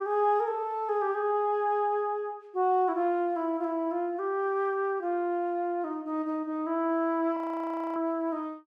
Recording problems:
audio freezing; at 7.5 s for 0.5 s

